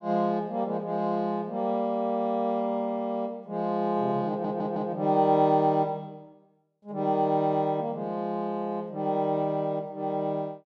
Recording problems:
audio stuttering; at 4.5 s

